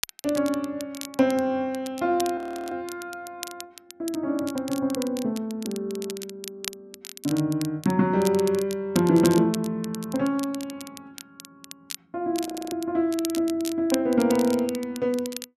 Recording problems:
crackling; vinyl, SNR 14 dB
audio freezing; at 2.5 s and at 12 s

